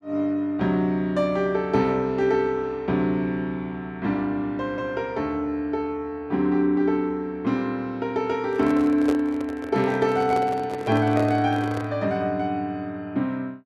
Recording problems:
microphone handling noise; from 8.5 to 12 s; peak 0 dB vs average level

